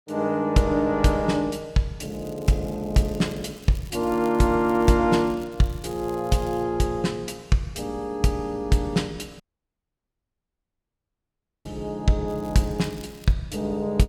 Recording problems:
crackling; from 2 to 5 s, from 5 to 6.5 s and from 12 to 13 s; loose cable, SNR 25 dB
dropout; at 9.5 s for 2.5 s

